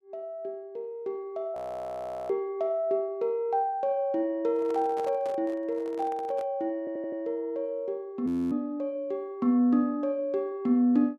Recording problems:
audio freezing; at 1.5 s for 0.5 s and at 8.5 s
handling noise; from 4.5 to 6.5 s; peak -8 dB vs average level
audio stuttering; at 7 s

